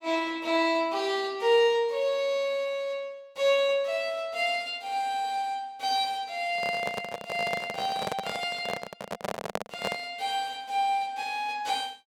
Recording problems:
microphone handling noise; from 6.5 to 10 s; peak +2 dB vs average level

